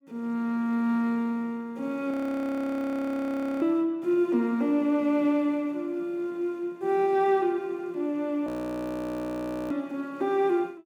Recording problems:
frozen audio; at 2 s for 1.5 s and at 8.5 s for 1 s

